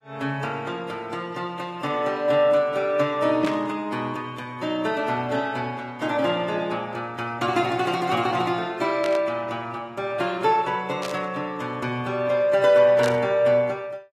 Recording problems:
lossy compression; AAC, log-spectral distance 2 dB, nothing above 13.1 kHz
static burst; 4 times, first at 3.5 s; peak -5 dB vs average level

